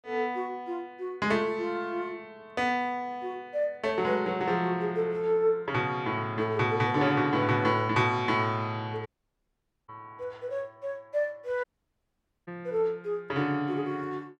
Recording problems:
audio cutting out; at 9 s for 1 s and at 12 s for 1 s

